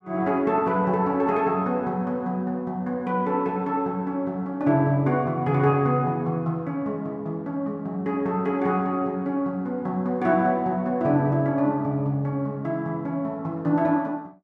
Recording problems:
none

